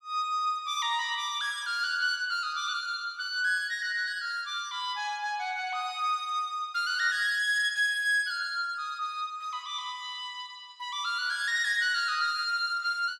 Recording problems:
none

